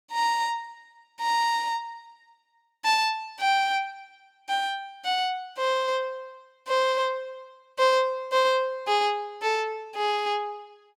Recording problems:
none

